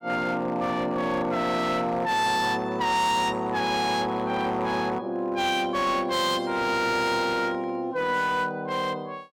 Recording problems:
distorted audio; hard clipping, signal-to-distortion ratio 11 dB

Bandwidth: 17 kHz